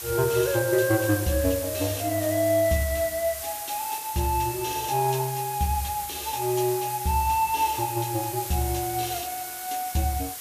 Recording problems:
background hiss; slope +1 dB per octave, SNR 7 dB

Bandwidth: 14.5 kHz